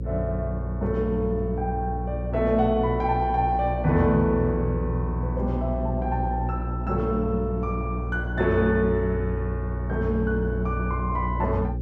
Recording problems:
mains hum; 60 Hz, harmonics up to 540 Hz, SNR 4 dB

